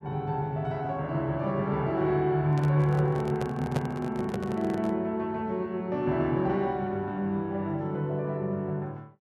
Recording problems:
handling noise; from 2.5 to 5 s; peak +1 dB vs average level

